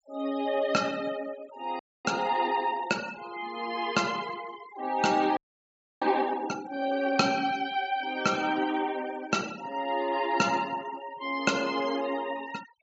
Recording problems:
low-pass filter; nothing above 8 kHz
denoising artefacts; signal-to-artefact ratio 17 dB
frozen audio; at 2 s and at 5.5 s for 0.5 s

